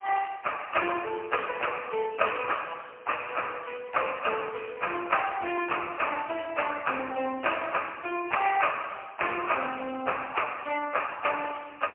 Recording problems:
phone line; 280 Hz to 3.1 kHz, AMR-NB, then MP3

